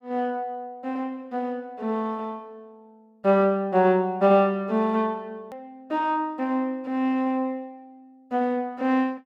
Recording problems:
hard cut with a click; at 5.5 s

